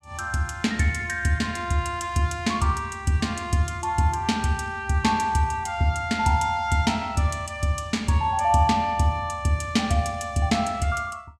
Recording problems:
none

